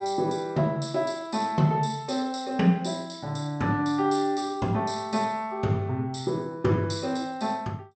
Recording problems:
treble missing; nothing above 8 kHz

